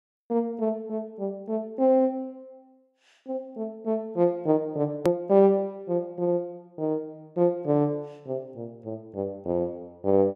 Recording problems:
edit click; at 5 s

